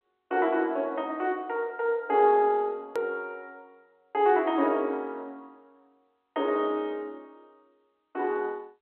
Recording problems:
phone line; 240 Hz to 3.4 kHz, G.711
click at an edit; at 3 s

